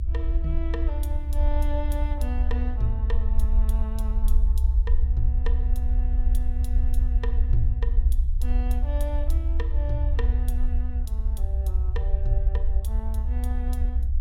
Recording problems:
low-frequency rumble; below 64 Hz, SNR -12 dB

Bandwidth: 16 kHz